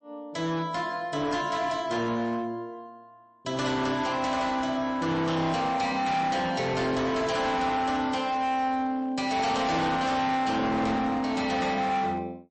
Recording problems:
lossy codec; MP3, log-spectral distance 2 dB, nothing above 8.2 kHz
distorted audio; hard clipping, signal-to-distortion ratio 8 dB

